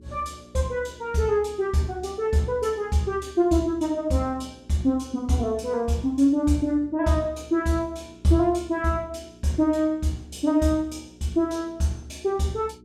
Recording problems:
hum; 60 Hz, harmonics up to 420 Hz, SNR 25 dB

